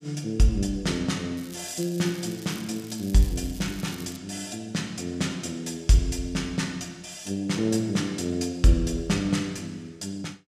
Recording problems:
crackling; from 1.5 to 4 s; loose cable, SNR 17 dB

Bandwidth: 14.5 kHz